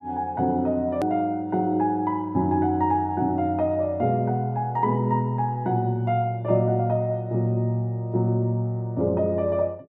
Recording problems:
click at an edit; at 1 s

